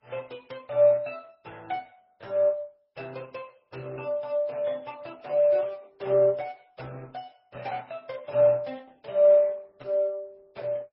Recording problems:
lossy compression; Opus, then MP3, log-spectral distance 3 dB

